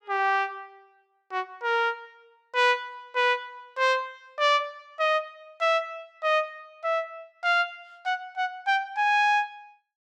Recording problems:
none

